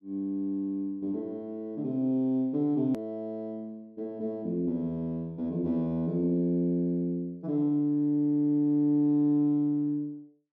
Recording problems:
edit click; at 3 s

